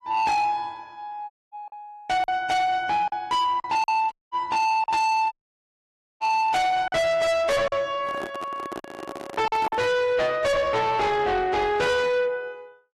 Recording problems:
lossy compression; AAC, log-spectral distance 2 dB, nothing above 13.1 kHz
distorted audio; soft clipping, signal-to-distortion ratio 6 dB
lost packets; 5% of the sound replaced, filled with silence
dropout; at 1.5 s, at 4 s and at 5.5 s for 1 s
handling noise; from 8 to 10 s; peak -5 dB vs average level

